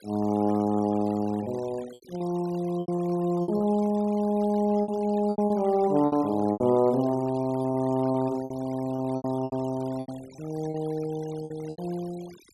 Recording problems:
noise reduction artefacts; signal-to-artefact ratio 22 dB
lost packets; 9% of the sound replaced, filled with repeated pitch periods

